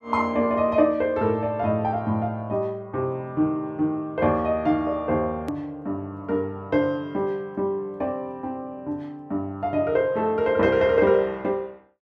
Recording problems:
edit click; at 5.5 s

